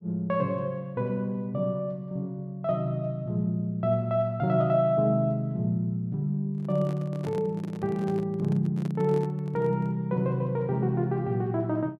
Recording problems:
microphone handling noise; from 6.5 to 10 s; peak -8 dB vs average level

